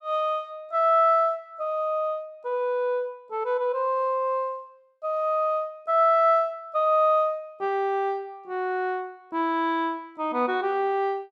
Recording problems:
none

